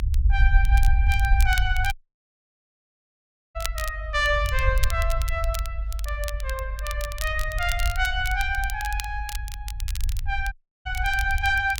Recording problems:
rumble; below 62 Hz, SNR 0 dB
crackling; vinyl, SNR 11 dB
audio cutting out; at 2 s for 1.5 s and at 11 s

